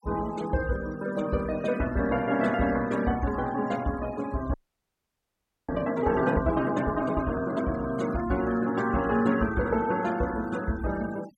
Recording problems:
denoising artefacts; signal-to-artefact ratio 17 dB
frozen audio; at 4.5 s for 1 s

